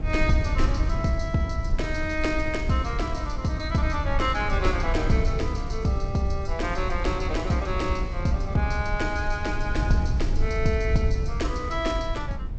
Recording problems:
lossy compression; G.722, log-spectral distance 2 dB, nothing above 7.3 kHz
low-frequency rumble; below 74 Hz, SNR 3 dB

